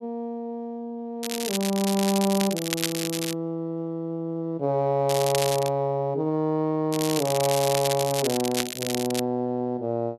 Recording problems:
crackling; from 1 to 3.5 s, at 5 s and from 7 to 9 s; loose cable, SNR 4 dB

